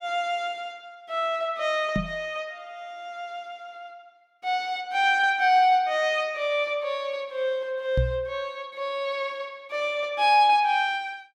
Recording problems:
microphone bump; at 2 s and at 8 s; peak +4 dB vs average level

